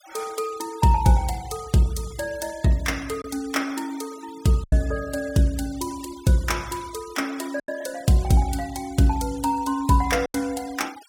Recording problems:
denoising artefacts; signal-to-artefact ratio 20 dB
lost packets; 2% of the sound replaced, filled with silence

